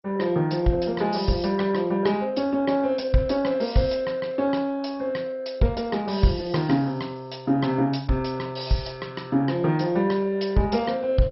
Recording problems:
lossy codec; MP2, log-spectral distance 4 dB, nothing above 5.5 kHz

